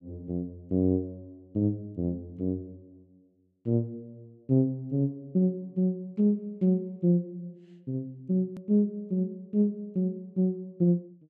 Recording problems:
click at an edit; at 8.5 s

